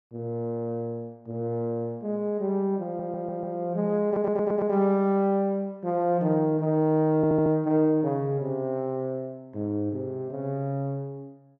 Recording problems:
audio stuttering; at 3 s, at 4 s and at 7 s

